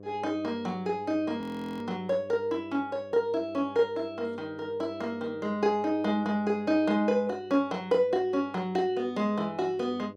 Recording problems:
electrical hum; 50 Hz, harmonics up to 700 Hz, SNR 18 dB
frozen audio; at 1.5 s

